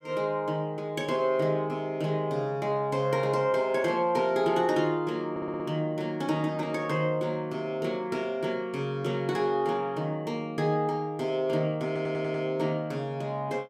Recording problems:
stutter; at 5.5 s and at 12 s

